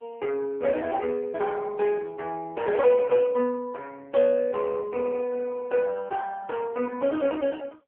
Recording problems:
telephone audio; 280 Hz to 3.1 kHz, AMR-NB

